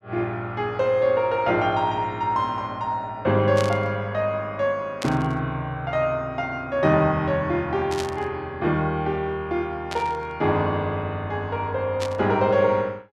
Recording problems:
burst of static; 5 times, first at 3.5 s; peak -4 dB vs average level

